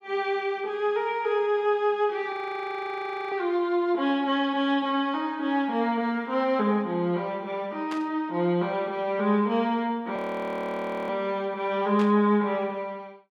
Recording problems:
audio freezing; at 2.5 s for 1 s and at 10 s for 1 s
static burst; at 8 s and at 12 s; peak -7 dB vs average level

